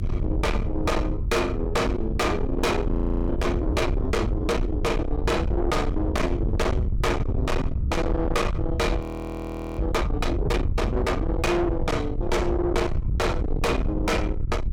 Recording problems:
distortion; soft clipping, signal-to-distortion ratio 6 dB
hum; 50 Hz, harmonics up to 400 Hz, SNR 12 dB
rumble; below 200 Hz, SNR 2 dB
audio freezing; at 3 s and at 9 s for 1 s

